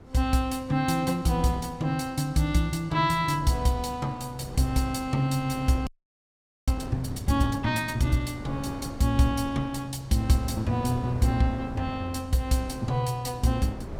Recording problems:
wind noise; below 370 Hz, SNR 14 dB
audio freezing; at 6 s for 1 s

